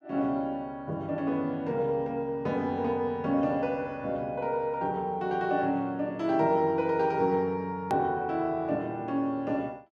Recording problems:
click at an edit; at 8 s

